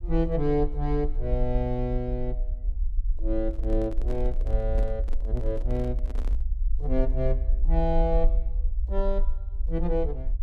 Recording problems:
low-frequency rumble; below 46 Hz, SNR 0 dB
handling noise; from 3.5 to 6.5 s; peak -7 dB vs average level

